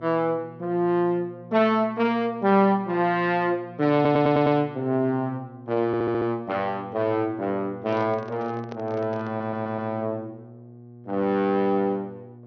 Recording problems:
treble missing; nothing above 6.4 kHz
mains hum; 60 Hz, harmonics up to 840 Hz, SNR 20 dB
stutter; at 4 s, at 6 s and at 9.5 s
microphone handling noise; from 8 to 10 s; peak -10 dB vs average level

